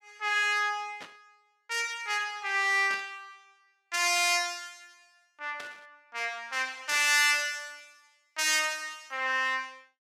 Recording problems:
burst of static; 4 times, first at 1 s; peak -11 dB vs average level

